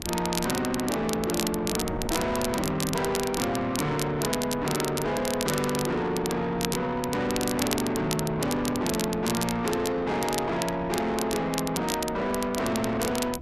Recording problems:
distortion; soft clipping, signal-to-distortion ratio 8 dB
wind on the microphone; below 400 Hz, SNR 13 dB
crackling; vinyl, SNR 7 dB

